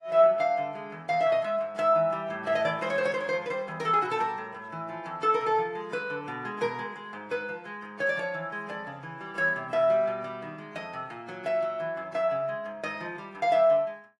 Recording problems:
lossy compression; AAC, log-spectral distance 2 dB

